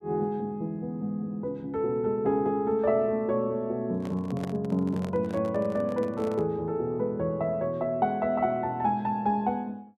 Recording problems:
microphone handling noise; from 4 to 6.5 s; peak -7 dB vs average level

